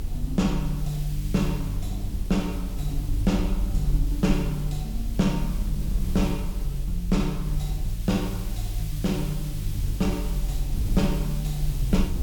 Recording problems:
background hiss; slope +4 dB per octave, SNR 15 dB
low-frequency rumble; below 48 Hz, strongest tone 44 Hz, SNR 3 dB

